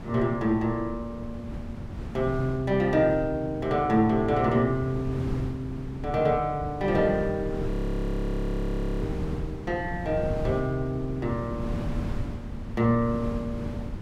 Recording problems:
wind noise; below 200 Hz, SNR 8 dB
frozen audio; at 7.5 s for 1.5 s

